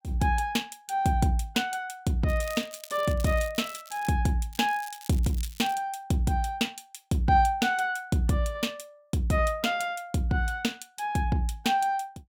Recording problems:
crackling; from 2.5 to 4 s and from 4.5 to 5.5 s; loose cable, SNR 18 dB

